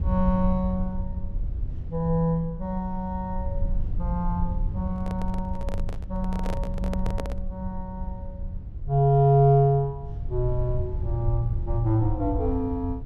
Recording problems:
rumble; below 82 Hz, SNR 7 dB
handling noise; from 5 to 7.5 s; peak -4 dB vs average level

